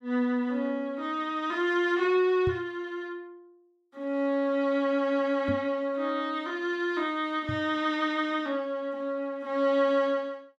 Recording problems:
microphone bump; at 2.5 s, at 5.5 s and at 7.5 s; peak -1 dB vs average level

